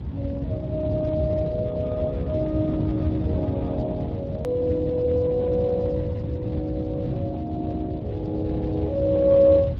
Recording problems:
lossy codec; Speex, log-spectral distance 2 dB
rumble; below 170 Hz, SNR 4 dB
hard cut with a click; at 4.5 s

